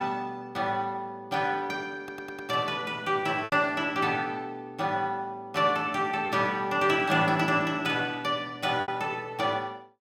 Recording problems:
lost packets; 2% of the sound replaced, filled with repeated pitch periods
audio stuttering; at 2 s

